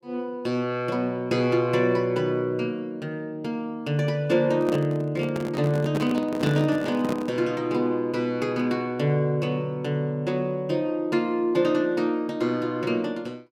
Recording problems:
handling noise; from 4.5 to 7.5 s; peak 0 dB vs average level

